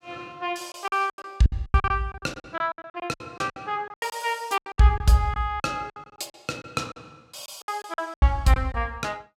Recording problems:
lost packets; 18% of the sound replaced, filled with silence

